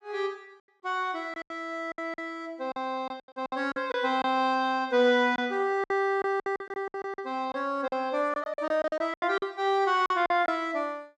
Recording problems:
lost packets; 12% of the sound replaced, filled with silence

